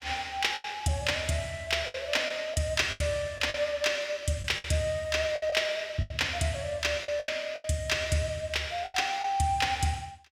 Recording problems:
packet loss; 8% of the sound replaced, filled with the last packet

